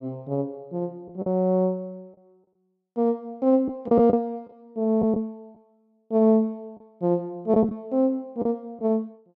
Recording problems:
lost packets; 4% of the sound replaced, filled with the last packet

